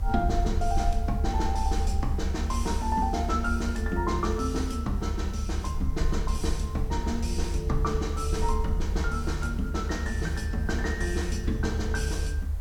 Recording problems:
background hiss; SNR 21 dB
rumble; below 76 Hz, SNR 0 dB

